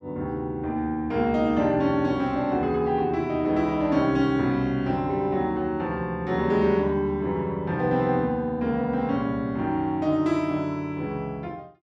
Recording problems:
none

